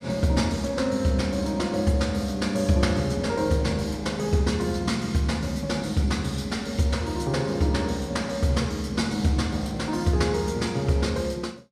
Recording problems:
none

